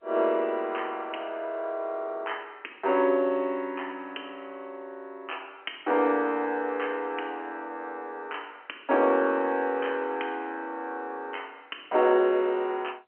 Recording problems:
telephone audio; 260 Hz to 3.1 kHz, G.711

